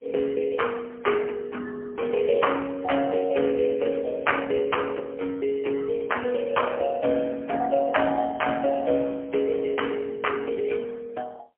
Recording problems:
phone line; 240 Hz to 3.2 kHz, AMR-NB, then MP3

